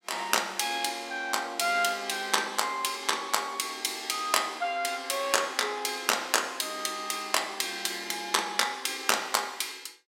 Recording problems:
none

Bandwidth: 16 kHz